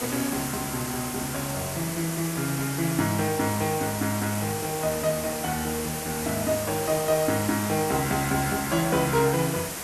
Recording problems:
hiss; slope -3 dB per octave, SNR 5 dB

